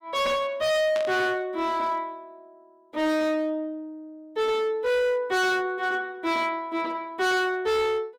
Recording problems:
distorted audio; hard clipping, signal-to-distortion ratio 7 dB
burst of static; at 1 s; peak -7 dB vs average level

